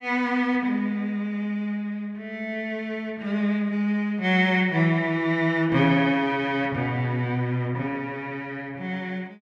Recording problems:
none

